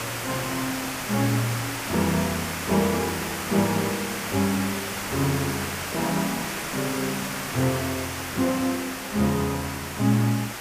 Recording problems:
background hiss; SNR 3 dB

